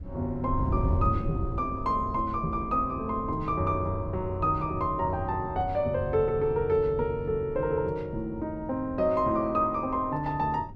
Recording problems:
wind on the microphone; below 130 Hz, SNR 9 dB

